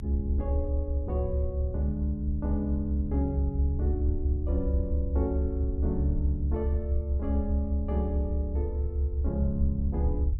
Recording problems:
low-frequency rumble; below 74 Hz, strongest tone 72 Hz, SNR -5 dB

